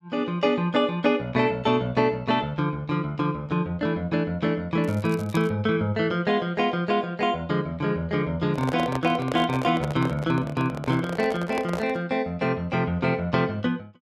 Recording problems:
crackle; at 5 s; loose cable, SNR 23 dB
handling noise; from 8.5 to 12 s; peak -2 dB vs average level

